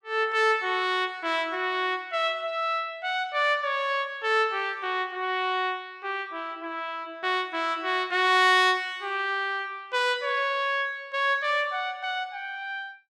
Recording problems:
none

